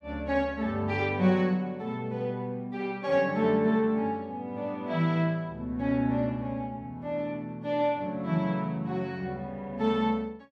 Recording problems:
none

